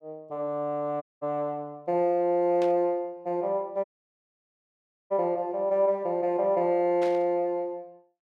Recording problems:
audio cutting out; at 1 s and at 4 s for 1.5 s
burst of static; at 2.5 s and at 7 s; peak -11 dB vs average level

